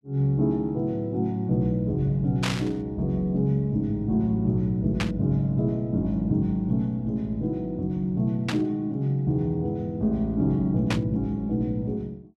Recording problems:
static burst; 4 times, first at 2.5 s; peak +1 dB vs average level

